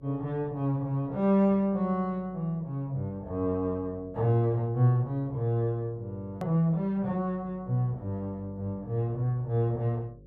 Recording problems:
hum; 50 Hz, harmonics up to 550 Hz, SNR 25 dB
edit click; at 6.5 s

